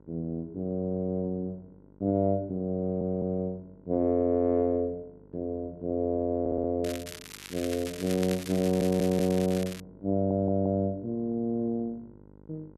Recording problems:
hum; 50 Hz, harmonics up to 1.4 kHz, SNR 26 dB
audio stuttering; 4 times, first at 3 s
crackling; from 7 to 10 s; loose cable, SNR 12 dB

